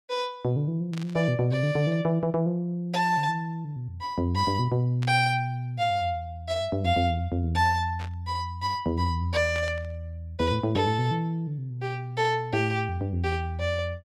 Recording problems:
burst of static; 4 times, first at 1 s; peak -10 dB vs average level

